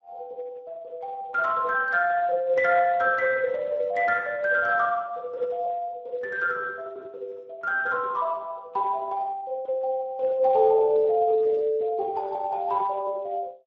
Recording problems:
codec artefacts; Speex, log-spectral distance 2 dB

